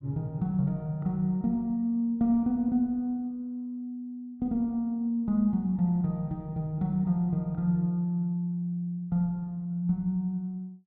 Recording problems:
none

